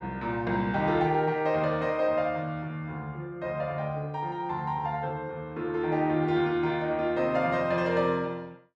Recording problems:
none

